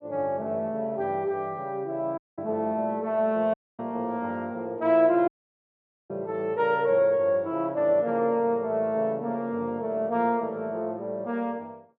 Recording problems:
dropout; at 2 s, at 3.5 s and at 5.5 s for 1 s

